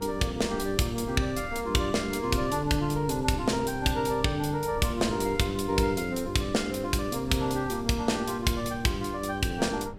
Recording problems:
electrical hum; 50 Hz, harmonics up to 1 kHz, SNR 19 dB
rumble; below 100 Hz, SNR 18 dB

